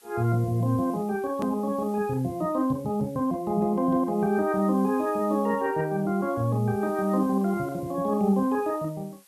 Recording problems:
hiss; SNR 27 dB
edit click; at 1.5 s

